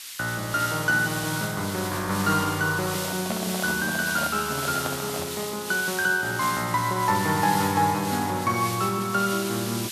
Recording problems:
hiss; SNR 7 dB
handling noise; from 3 to 5.5 s; peak -3 dB vs average level

